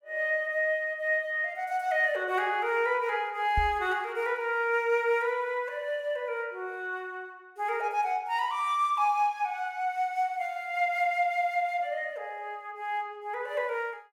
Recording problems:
knock on the microphone; at 3.5 s; peak +1 dB vs average level

